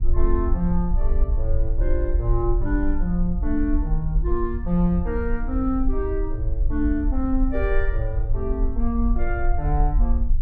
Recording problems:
rumble; below 50 Hz, SNR 0 dB

